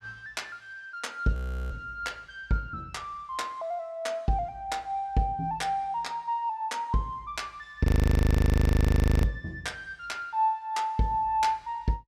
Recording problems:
audio freezing; at 1.5 s and at 8 s for 1.5 s

